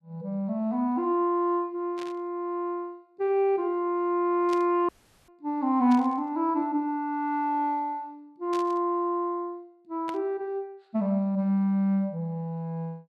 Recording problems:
static burst; 5 times, first at 2 s; peak -9 dB vs average level
audio cutting out; at 5 s

